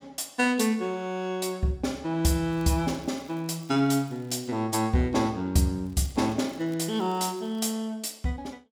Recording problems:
crackle; from 2.5 to 4.5 s and from 6 to 7.5 s; loose cable, SNR 29 dB

